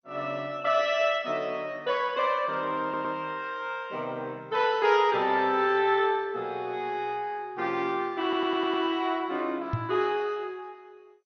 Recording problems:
lossy codec; MP2, log-spectral distance 2 dB, nothing above 5.3 kHz
stutter; at 3 s and at 8 s
microphone thump; at 9.5 s; peak +2 dB vs average level

